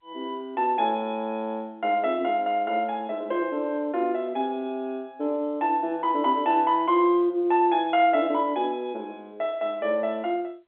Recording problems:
phone line; 240 Hz to 3.6 kHz, G.711

